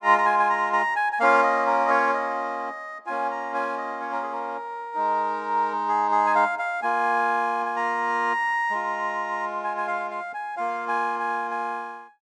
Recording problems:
none

